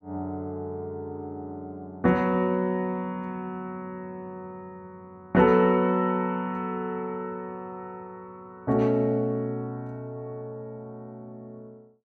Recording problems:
none

